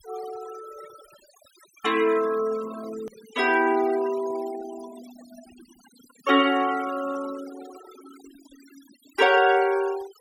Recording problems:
noise reduction artefacts; signal-to-artefact ratio 18 dB
edit click; at 3 s

